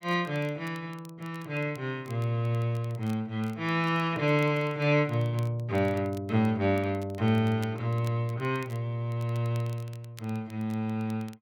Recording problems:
crackle; vinyl, SNR 26 dB

